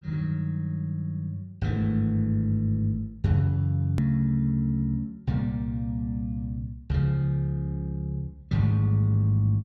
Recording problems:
edit click; at 4 s

